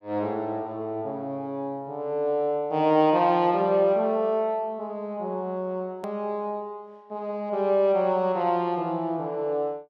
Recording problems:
edit click; at 6 s

